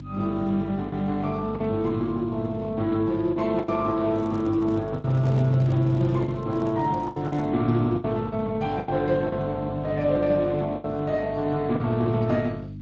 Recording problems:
lossy codec; Speex, log-spectral distance 2 dB
mains hum; 50 Hz, harmonics up to 300 Hz, SNR 11 dB
lost packets; 6% of the sound replaced, filled with the last packet
microphone handling noise; from 4 to 7.5 s; peak -11 dB vs average level

